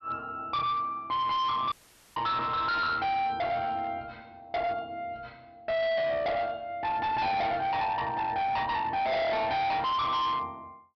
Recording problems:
low-pass filter; nothing above 5.5 kHz
distortion; hard clipping, signal-to-distortion ratio 6 dB
audio cutting out; at 1.5 s

